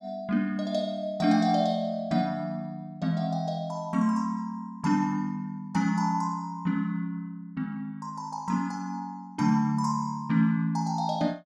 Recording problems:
none

